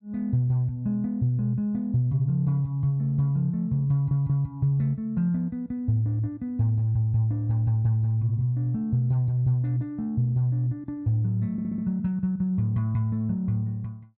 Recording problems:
stutter; at 4 s and at 12 s

